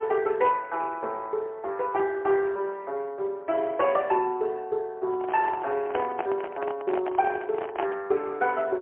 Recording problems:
phone line; 300 Hz to 3.1 kHz, AMR-NB, then MP3
microphone handling noise; from 5 to 8 s; peak 0 dB vs average level

